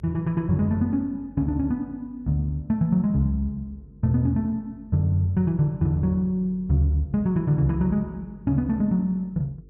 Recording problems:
electrical hum; 50 Hz, harmonics up to 500 Hz, SNR 25 dB

